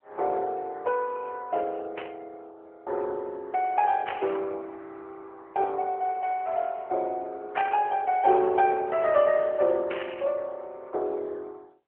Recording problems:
phone line; 320 Hz to 3.1 kHz, AMR-NB
static burst; 4 times, first at 2 s; peak -3 dB vs average level

